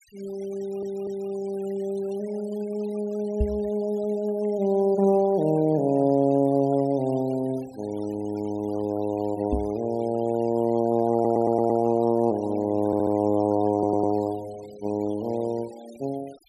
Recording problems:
noise reduction artefacts; signal-to-artefact ratio 25 dB
audio stuttering; 4 times, first at 0.5 s
knock on the microphone; at 3.5 s and at 9.5 s; peak +3 dB vs average level

